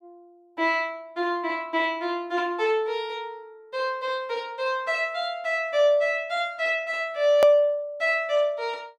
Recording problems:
edit click; at 7.5 s

